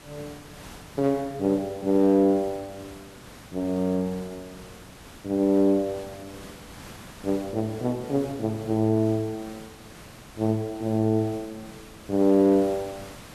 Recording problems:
hiss; slope -3 dB per octave, SNR 20 dB

